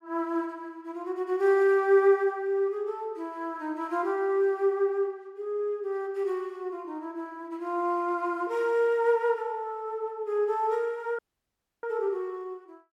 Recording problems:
dropout; at 11 s for 0.5 s

